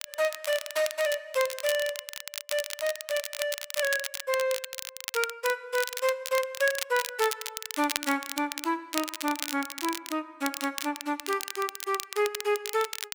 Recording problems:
crackle; vinyl, SNR 6 dB

